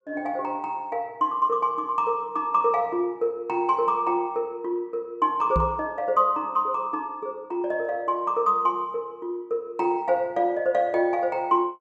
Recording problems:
microphone bump; at 5.5 s; peak +2 dB vs average level

